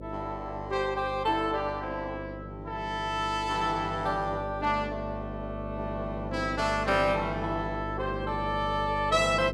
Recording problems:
hum; 50 Hz, harmonics up to 600 Hz, SNR 9 dB

